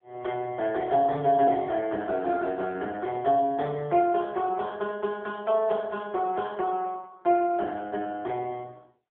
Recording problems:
phone line; 150 Hz to 3.3 kHz, AMR-NB

